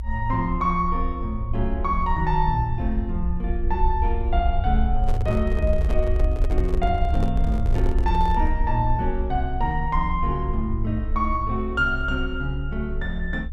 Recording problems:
low-frequency rumble; below 62 Hz, strongest tone 24 Hz, SNR 1 dB
microphone handling noise; from 5 to 8.5 s; peak -3 dB vs average level

